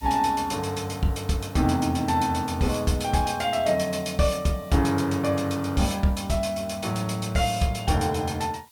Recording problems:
background hiss; slope +3 dB per octave, SNR 25 dB

